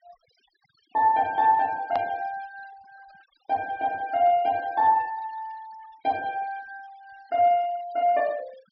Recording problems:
low-pass filter; nothing above 5.5 kHz
noise reduction artefacts; signal-to-artefact ratio 25 dB
hard cut with a click; at 2 s

